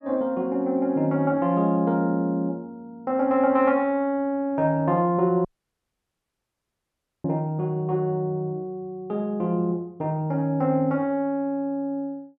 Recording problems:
dropout; at 5.5 s for 2 s

